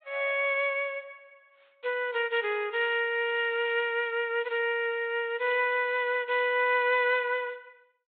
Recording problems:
treble cut off; nothing above 4 kHz

